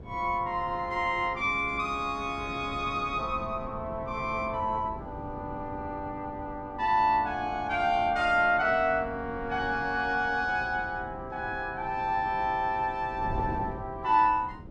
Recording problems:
wind noise; below 310 Hz, SNR 15 dB

